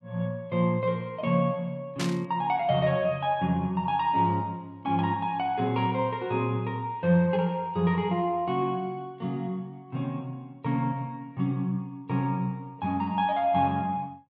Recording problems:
burst of static; at 2 s; peak -2 dB vs average level

